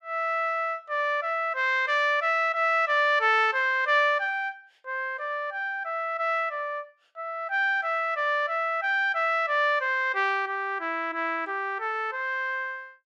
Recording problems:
none

